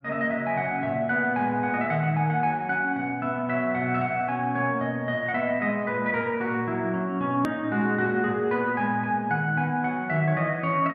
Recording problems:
edit click; at 7.5 s

